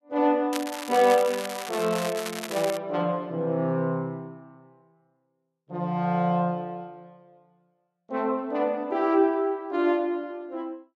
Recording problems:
crackling; from 0.5 to 3 s; loose cable, SNR 10 dB

